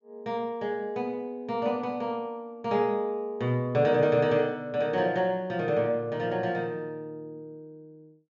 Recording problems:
treble cut off; nothing above 8 kHz

